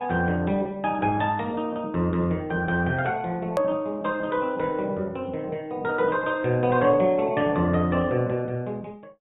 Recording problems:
low-pass filter; nothing above 4 kHz
lossy codec; Opus, log-spectral distance 2 dB
click at an edit; at 3.5 s

